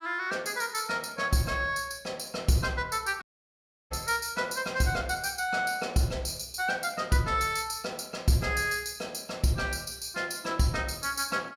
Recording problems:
audio cutting out; at 3 s for 0.5 s

